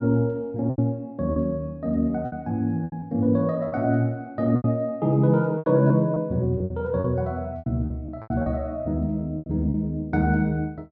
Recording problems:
packet loss; 9% of the sound replaced, filled with repeated pitch periods

